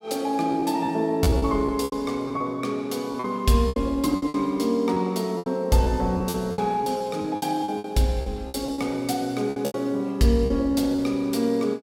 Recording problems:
packet loss; 12% of the sound replaced, filled with repeated pitch periods

